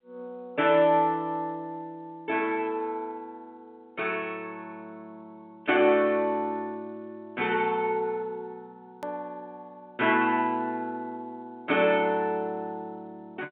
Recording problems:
phone line; 220 Hz to 3.7 kHz, G.711
edit click; at 9 s

